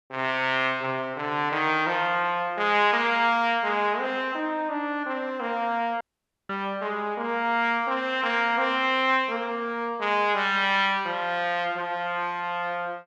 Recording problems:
dropout; at 6 s

